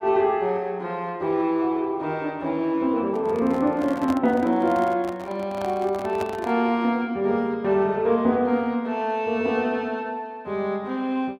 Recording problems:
microphone handling noise; from 3 to 6.5 s; peak -4 dB vs average level

